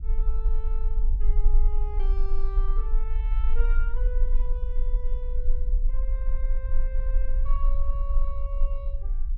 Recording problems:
rumble; below 36 Hz, strongest tone 20 Hz, SNR -15 dB

